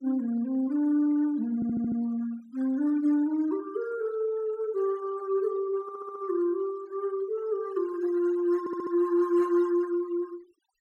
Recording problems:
denoising artefacts; signal-to-artefact ratio 24 dB
stutter; at 1.5 s, at 6 s and at 8.5 s

